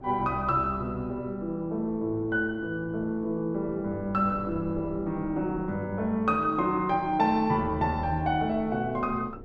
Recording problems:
mains hum; 60 Hz, harmonics up to 1.2 kHz, SNR 23 dB
wind on the microphone; below 410 Hz, SNR 19 dB

